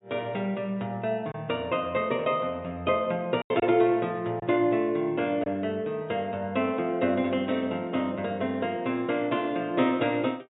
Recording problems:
low-pass filter; nothing above 4 kHz
packet loss; 1.5% of the sound replaced, filled with silence

